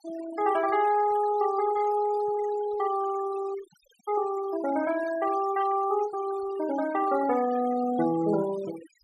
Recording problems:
noise reduction artefacts; signal-to-artefact ratio 15 dB

